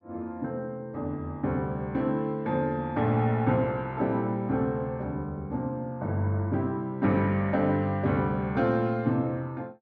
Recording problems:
none

